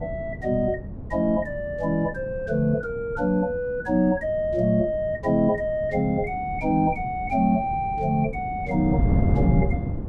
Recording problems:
wind on the microphone; below 200 Hz, SNR 7 dB

